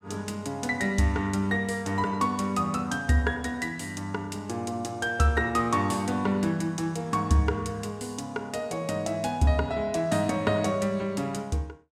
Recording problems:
none

